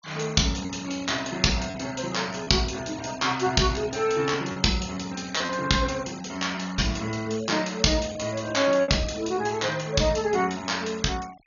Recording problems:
low-pass filter; nothing above 6.9 kHz
denoising artefacts; signal-to-artefact ratio 20 dB
packet loss; 4% of the sound replaced, filled with repeated pitch periods

